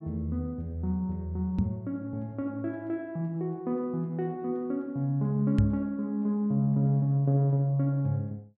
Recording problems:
microphone thump; at 1.5 s and at 5.5 s; peak +8 dB vs average level

